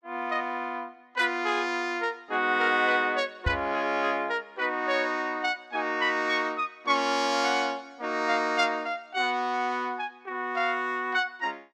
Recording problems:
microphone bump; at 3.5 s; peak +2 dB vs average level

